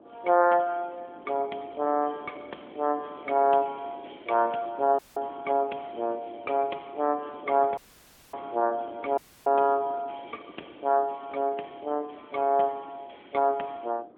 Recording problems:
phone line; 240 Hz to 3.5 kHz, AMR-NB
wind on the microphone; below 560 Hz, SNR 21 dB
audio cutting out; at 5 s, at 8 s for 0.5 s and at 9 s

